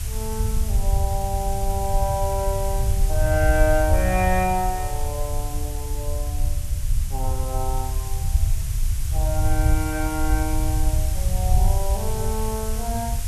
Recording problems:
hiss; slope 0 dB per octave, SNR 8 dB
rumble; below 80 Hz, SNR -2 dB

